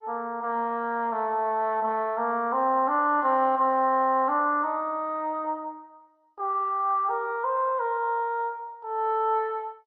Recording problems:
codec artefacts; MP2, log-spectral distance 2 dB

